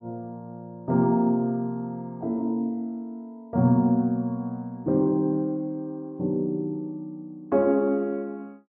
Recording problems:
none

